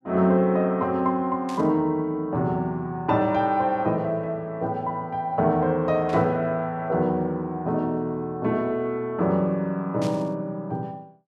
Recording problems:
static burst; at 1.5 s, at 6 s and at 10 s; peak -11 dB vs average level

